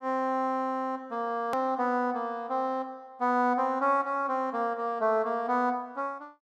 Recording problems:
click at an edit; at 1.5 s

